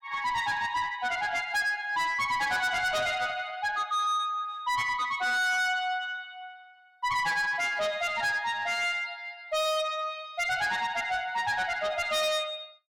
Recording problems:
distortion; soft clipping, signal-to-distortion ratio 7 dB

